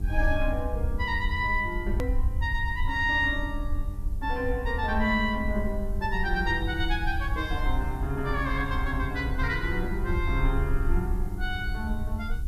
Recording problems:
electrical hum; 50 Hz, harmonics up to 800 Hz, SNR 17 dB
hiss; SNR 28 dB
rumble; below 68 Hz, SNR 3 dB
hard cut with a click; at 2 s

